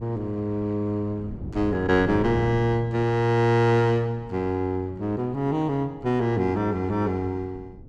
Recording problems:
wind noise; below 220 Hz, SNR 16 dB

